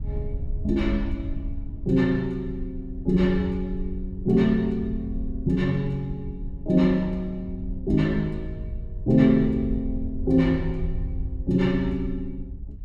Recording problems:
wind on the microphone; below 74 Hz, SNR 10 dB

